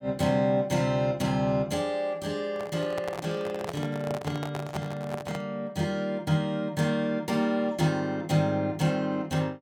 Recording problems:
microphone handling noise; from 2.5 to 5.5 s; peak -3 dB vs average level

